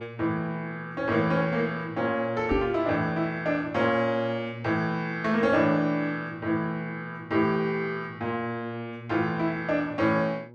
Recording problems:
electrical hum; 60 Hz, harmonics up to 960 Hz, SNR 21 dB
microphone bump; at 2.5 s; peak +3 dB vs average level

